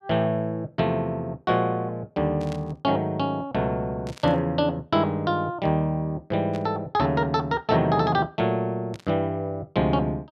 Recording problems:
static burst; 4 times, first at 2.5 s; peak -12 dB vs average level

